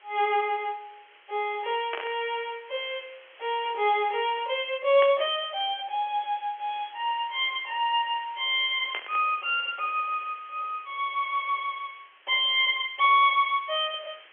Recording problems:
telephone audio; 320 Hz to 3.3 kHz, G.711
background hiss; SNR 25 dB
burst of static; at 2 s, at 5 s and at 9 s; peak -3 dB vs average level

